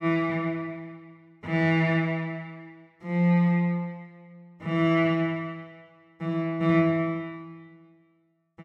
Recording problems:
none

